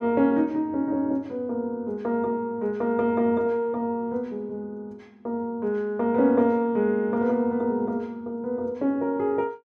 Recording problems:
none

